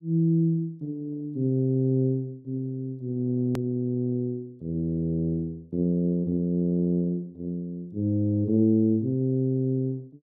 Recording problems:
edit click; at 3.5 s

